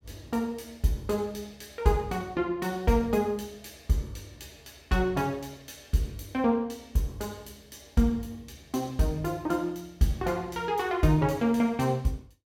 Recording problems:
none

